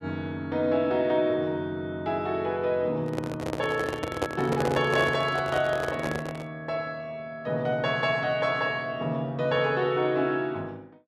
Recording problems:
microphone handling noise; from 3 to 6.5 s; peak +3 dB vs average level

